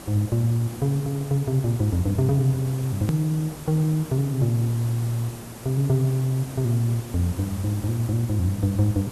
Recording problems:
hiss; slope -5 dB per octave, SNR 15 dB
edit click; at 3 s

